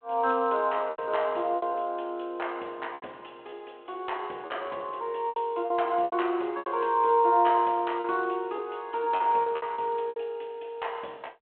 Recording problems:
phone line; 240 Hz to 3.3 kHz, G.726
packet loss; 9% of the sound replaced, filled with repeated pitch periods

